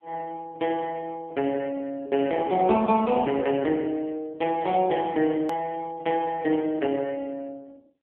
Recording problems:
phone line; 170 Hz to 3.4 kHz, AMR-NB
edit click; at 5.5 s

